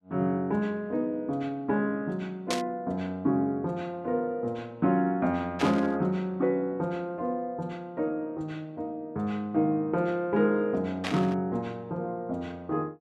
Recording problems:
burst of static; at 2.5 s, at 5.5 s and at 11 s; peak +2 dB vs average level

